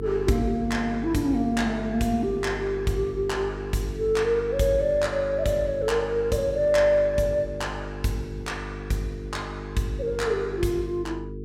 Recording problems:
hum; 50 Hz, harmonics up to 450 Hz, SNR 10 dB

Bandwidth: 16 kHz